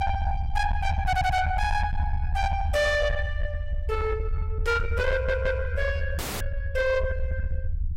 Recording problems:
distorted audio; soft clipping, signal-to-distortion ratio 11 dB
low-frequency rumble; below 80 Hz, SNR 3 dB
stutter; at 1 s and at 5 s
static burst; at 4.5 s and at 7 s; peak -13 dB vs average level
audio cutting out; at 6 s

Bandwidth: 16 kHz